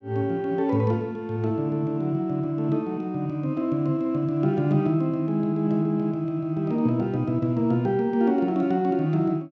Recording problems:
none

